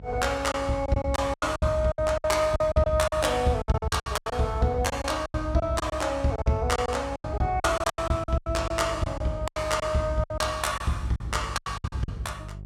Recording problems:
hum; 50 Hz, harmonics up to 400 Hz, SNR 15 dB
lost packets; 16% of the sound replaced, filled with silence

